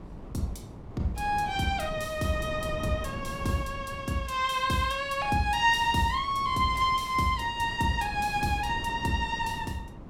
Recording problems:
wind noise; below 290 Hz, SNR 13 dB

